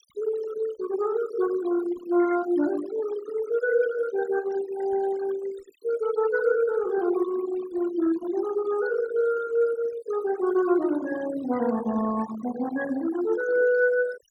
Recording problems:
noise reduction artefacts; signal-to-artefact ratio 15 dB

